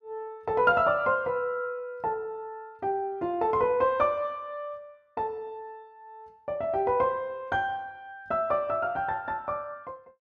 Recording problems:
none

